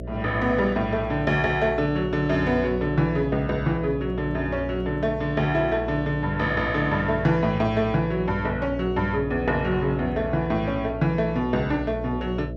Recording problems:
hum; 60 Hz, harmonics up to 660 Hz, SNR 10 dB

